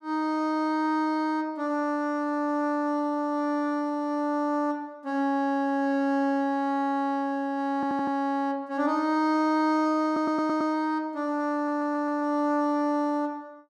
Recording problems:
audio stuttering; at 8 s, at 10 s and at 12 s

